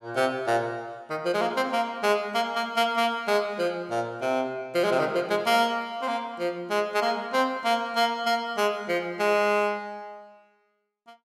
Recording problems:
none

